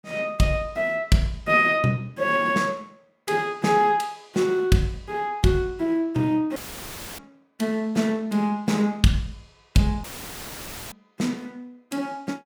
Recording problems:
dropout; at 6.5 s for 0.5 s and at 10 s for 1 s; filled with static

